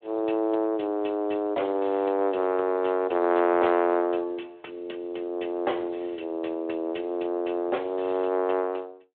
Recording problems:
telephone audio; 280 Hz to 3.4 kHz, Speex

